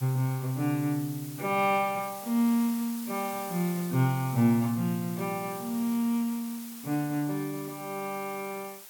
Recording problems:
background hiss; slope +1 dB per octave, SNR 13 dB

